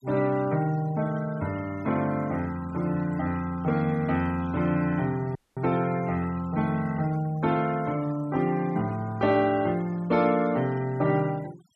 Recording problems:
denoising artefacts; signal-to-artefact ratio 21 dB
audio cutting out; at 5.5 s

